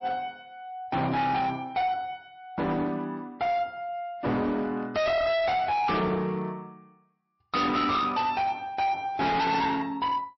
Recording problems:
lossy compression; MP3, log-spectral distance 2 dB, nothing above 5.7 kHz
distortion; hard clipping, signal-to-distortion ratio 6 dB

